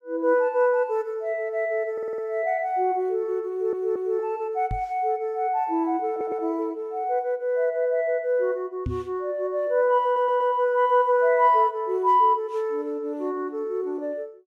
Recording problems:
stutter; 4 times, first at 2 s
knock on the microphone; at 4.5 s and at 9 s; peak -2 dB vs average level

